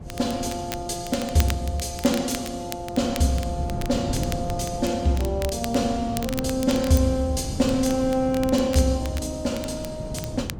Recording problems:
wind noise; below 220 Hz, SNR 10 dB
crackle; vinyl, SNR 14 dB

